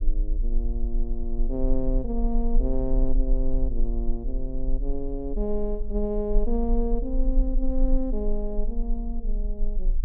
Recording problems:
low-frequency rumble; below 34 Hz, strongest tone 22 Hz, SNR -1 dB

